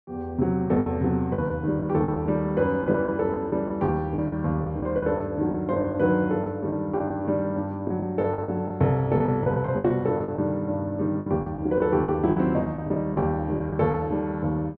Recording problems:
packet loss; 10% of the sound replaced, filled with the last packet

